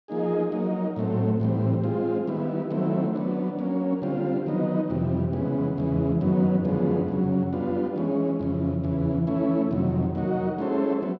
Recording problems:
none

